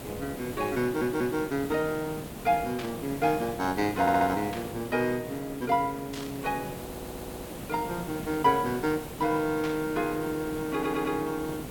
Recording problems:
hiss; slope -6 dB per octave, SNR 10 dB
audio stuttering; 4 times, first at 1 s
static burst; 4 times, first at 3 s; peak -6 dB vs average level

